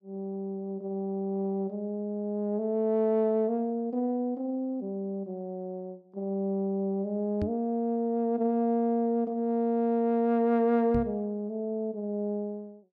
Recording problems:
knock on the microphone; at 7.5 s and at 11 s; peak -1 dB vs average level

